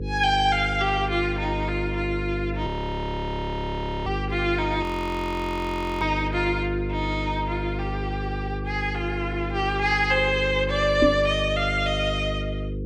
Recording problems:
hum; 50 Hz, harmonics up to 500 Hz, SNR 5 dB
audio freezing; at 2.5 s for 1.5 s and at 5 s for 1 s
knock on the microphone; at 11 s; peak +7 dB vs average level

